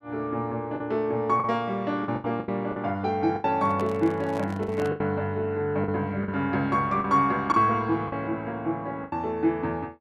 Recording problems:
lost packets; 8% of the sound replaced, filled with the last packet
microphone handling noise; from 3.5 to 5 s; peak -6 dB vs average level

